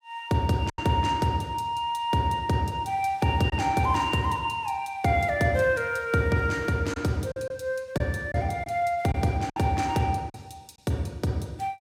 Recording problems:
packet loss; 3% of the sound replaced, filled with silence

